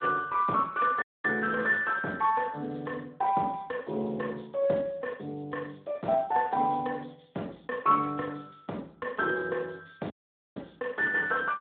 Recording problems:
phone line; 260 Hz to 3.6 kHz, Speex
audio cutting out; at 1 s and at 10 s

